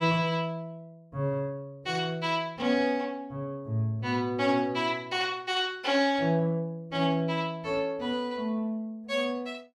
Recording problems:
none

